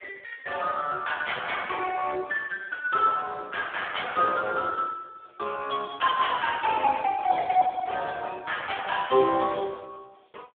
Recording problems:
telephone audio; 280 Hz to 3.7 kHz, Speex

